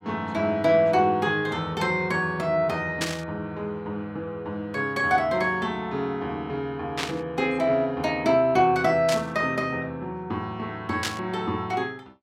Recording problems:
burst of static; 4 times, first at 3 s; peak +2 dB vs average level

